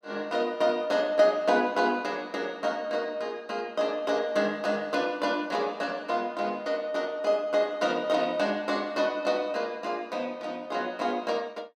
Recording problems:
none

